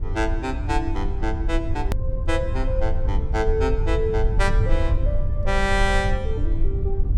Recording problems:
rumble; below 72 Hz, SNR -1 dB
hard cut with a click; at 2 s

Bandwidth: 17 kHz